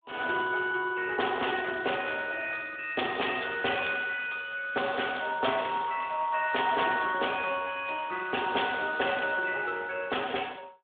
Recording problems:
telephone audio; 320 Hz to 3.5 kHz, Speex
crackle; from 4.5 to 7 s; loose cable, SNR 26 dB

